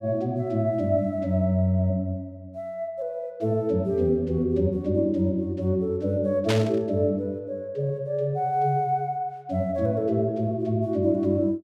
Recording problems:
static burst; at 6.5 s; peak +1 dB vs average level

